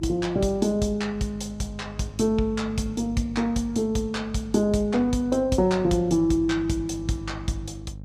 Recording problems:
electrical hum; 50 Hz, harmonics up to 550 Hz, SNR 15 dB

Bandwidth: 15.5 kHz